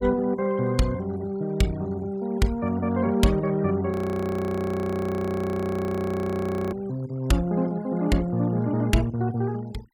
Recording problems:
noise reduction artefacts; signal-to-artefact ratio 23 dB
audio freezing; at 4 s for 3 s

